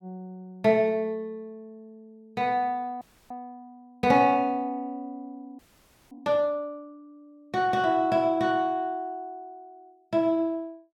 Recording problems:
audio freezing; at 3 s and at 5.5 s for 0.5 s

